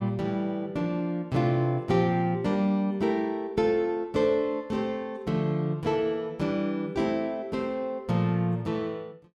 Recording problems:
none

